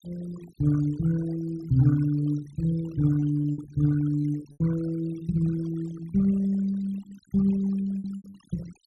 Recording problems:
denoising artefacts; signal-to-artefact ratio 21 dB
packet loss; 5% of the sound replaced, filled with repeated pitch periods

